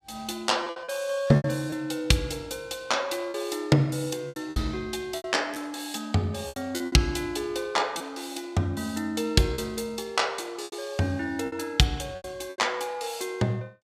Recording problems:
packet loss; 8% of the sound replaced, filled with repeated pitch periods

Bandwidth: 15.5 kHz